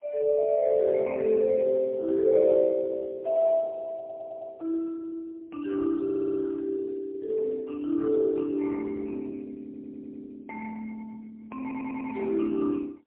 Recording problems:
phone line; 340 Hz to 2.7 kHz, AMR-NB, then MP3
audio stuttering; 4 times, first at 4 s

